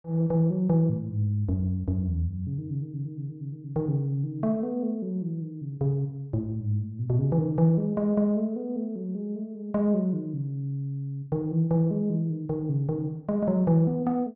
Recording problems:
none

